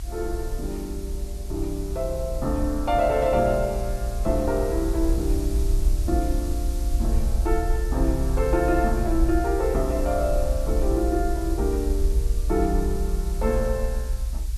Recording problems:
background hiss; SNR 16 dB
low-frequency rumble; below 60 Hz, SNR 2 dB

